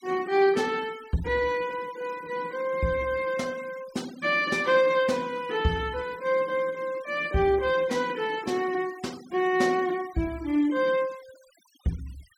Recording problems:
noise reduction artefacts; signal-to-artefact ratio 22 dB

